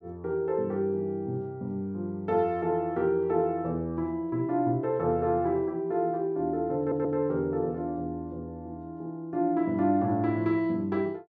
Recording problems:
stutter; at 7 s

